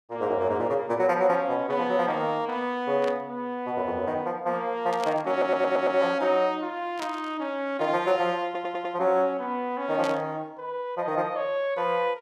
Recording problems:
burst of static; 4 times, first at 3 s; peak -6 dB vs average level
audio stuttering; at 5.5 s and at 8.5 s

